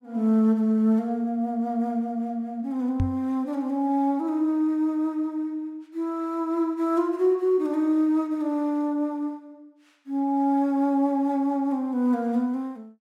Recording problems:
knock on the microphone; at 3 s; peak +3 dB vs average level

